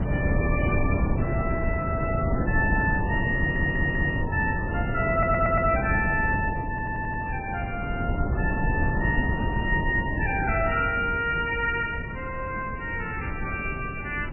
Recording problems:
lossy compression; MP3, log-spectral distance 3 dB, nothing above 2.4 kHz
wind noise; below 260 Hz, SNR 1 dB
stutter; at 3.5 s, at 5 s and at 6.5 s

